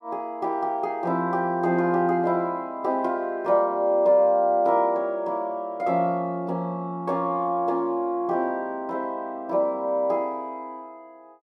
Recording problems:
none

